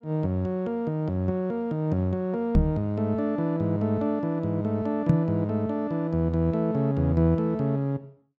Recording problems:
microphone thump; at 2.5 s and at 5 s; peak +9 dB vs average level

